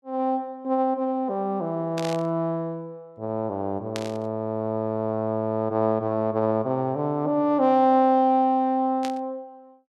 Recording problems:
static burst; at 2 s, at 4 s and at 9 s; peak -5 dB vs average level

